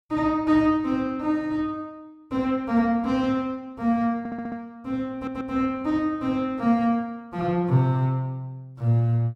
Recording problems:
audio stuttering; at 4 s and at 5 s

